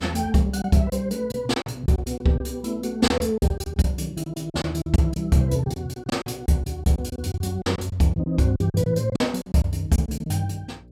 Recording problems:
hum; 60 Hz, harmonics up to 600 Hz, SNR 26 dB
lost packets; 12% of the sound replaced, filled with silence

